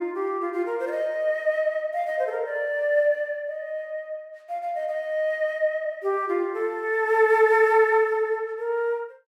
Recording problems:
none

